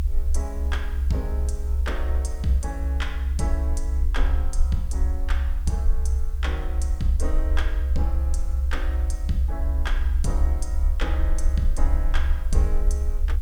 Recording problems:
hiss; slope -1 dB per octave, SNR 22 dB
low-frequency rumble; below 66 Hz, SNR -7 dB

